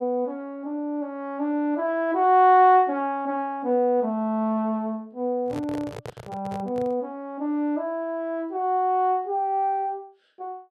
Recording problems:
handling noise; from 5.5 to 7 s; peak -8 dB vs average level

